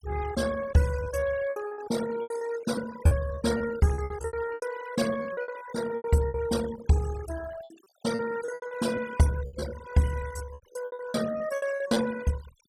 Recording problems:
noise reduction artefacts; signal-to-artefact ratio 13 dB
lost packets; 16% of the sound replaced, filled with repeated pitch periods

